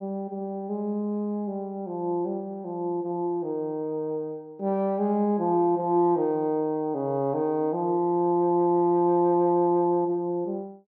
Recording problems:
none

